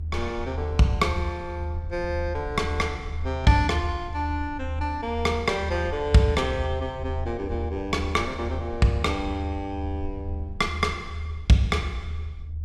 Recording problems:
low-frequency rumble; below 80 Hz, strongest tone 78 Hz, SNR 7 dB

